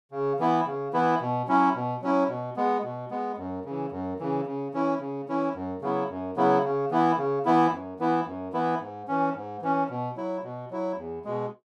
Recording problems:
none

